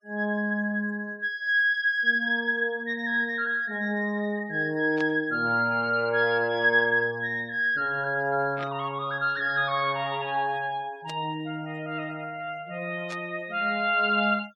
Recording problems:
denoising artefacts; signal-to-artefact ratio 27 dB
burst of static; 4 times, first at 5 s; peak -9 dB vs average level

